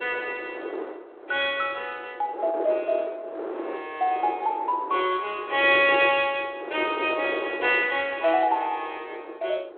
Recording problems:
phone line; 320 Hz to 3.6 kHz, G.726
wind on the microphone; below 640 Hz, SNR 11 dB

